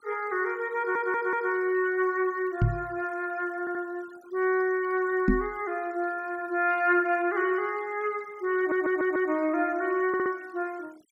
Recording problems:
noise reduction artefacts; signal-to-artefact ratio 26 dB
audio stuttering; 4 times, first at 1 s
microphone thump; at 2.5 s and at 5.5 s; peak +8 dB vs average level

